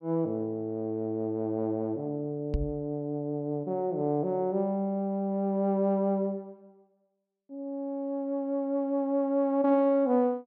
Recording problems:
microphone thump; at 2.5 s; peak +3 dB vs average level

